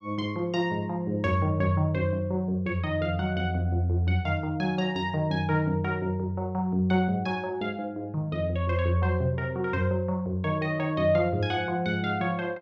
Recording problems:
none

